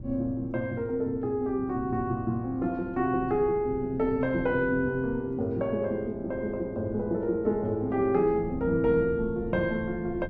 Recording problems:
wind on the microphone; below 200 Hz, SNR 15 dB

